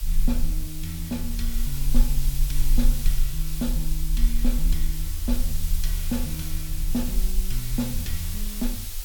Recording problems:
background hiss; slope +2 dB per octave, SNR 3 dB
rumble; below 38 Hz, strongest tone 20 Hz, SNR -3 dB

